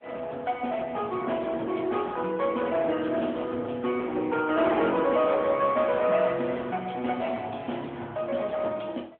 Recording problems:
telephone audio; 300 Hz to 3.4 kHz, AMR-NB
distortion; hard clipping, signal-to-distortion ratio 15 dB

